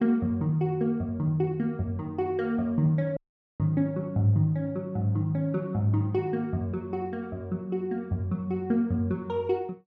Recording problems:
audio cutting out; at 3 s

